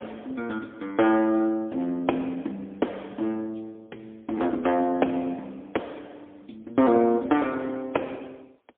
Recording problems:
telephone audio; 220 Hz to 3.9 kHz, AMR-NB, then MP3

